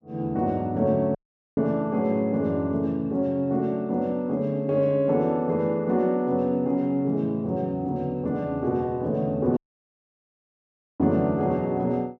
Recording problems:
audio cutting out; at 1 s and at 9.5 s for 1.5 s

